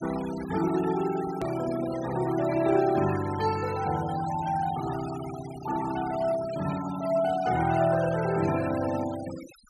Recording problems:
denoising artefacts; signal-to-artefact ratio 13 dB
click at an edit; at 1.5 s

